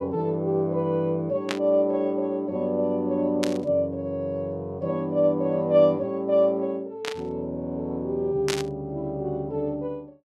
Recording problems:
static burst; 4 times, first at 1.5 s; peak +1 dB vs average level

